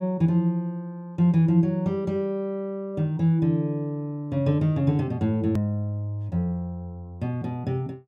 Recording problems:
click at an edit; at 5.5 s

